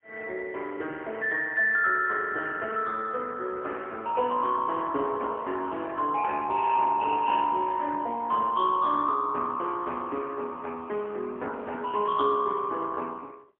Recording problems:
phone line; 240 Hz to 3.2 kHz, AMR-NB, then MP3

